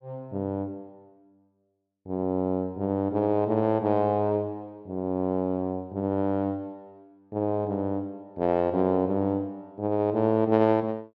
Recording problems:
none

